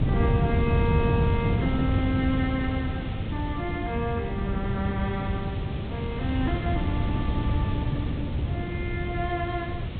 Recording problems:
treble cut off; nothing above 4 kHz
hiss; SNR 11 dB
wind noise; below 180 Hz, SNR -3 dB

